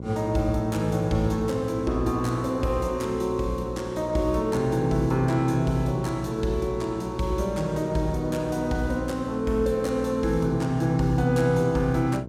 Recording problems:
electrical hum; 60 Hz, harmonics up to 1 kHz, SNR 12 dB

